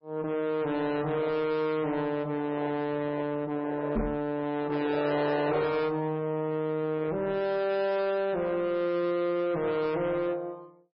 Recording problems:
codec artefacts; AAC, then MP3, log-spectral distance 2 dB, nothing above 4.5 kHz
distortion; soft clipping, signal-to-distortion ratio 7 dB
knock on the microphone; at 4 s; peak +3 dB vs average level

